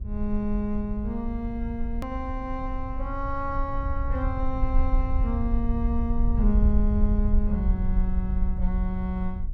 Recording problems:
electrical hum; 60 Hz, harmonics up to 720 Hz, SNR 23 dB
low-frequency rumble; below 60 Hz, SNR -2 dB
edit click; at 2 s

